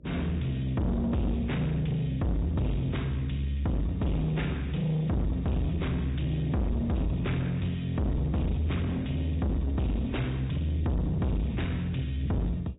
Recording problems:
treble cut off; nothing above 3.8 kHz
lossy codec; MP3, log-spectral distance 2 dB
distorted audio; soft clipping, signal-to-distortion ratio 6 dB
electrical hum; 60 Hz, harmonics up to 600 Hz, SNR 27 dB

